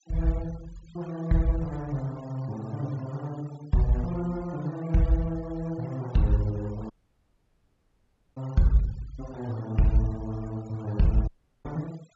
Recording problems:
low-pass filter; nothing above 7.6 kHz
noise reduction artefacts; signal-to-artefact ratio 23 dB
audio cutting out; at 7 s for 1.5 s and at 11 s

